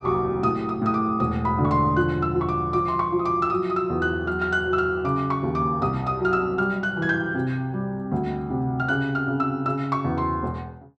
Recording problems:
none

